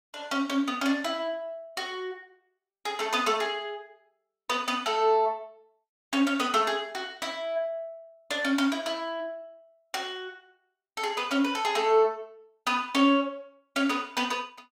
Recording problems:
none

